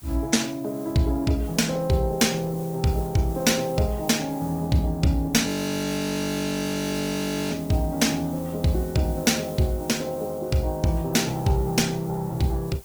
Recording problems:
lossy codec; Opus, log-spectral distance 3 dB, nothing above 19 kHz
hiss; slope -1 dB per octave, SNR 20 dB
audio freezing; at 5.5 s for 2 s

